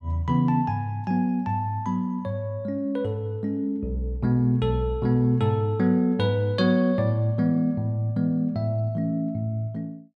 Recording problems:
none

